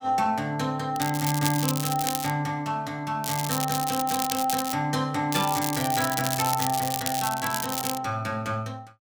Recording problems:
crackle; from 1 to 2.5 s, from 3 to 4.5 s and from 5.5 to 8 s; loose cable, SNR 3 dB

